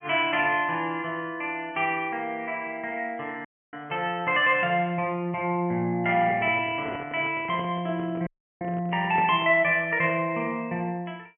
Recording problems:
treble cut off; nothing above 3.1 kHz
audio cutting out; at 3.5 s and at 8.5 s
microphone handling noise; from 6 to 9.5 s; peak -6 dB vs average level

